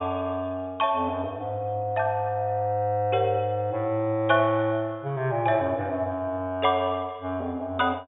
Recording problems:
low-pass filter; nothing above 4 kHz

